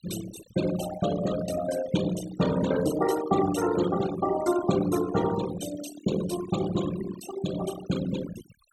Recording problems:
denoising artefacts; signal-to-artefact ratio 10 dB

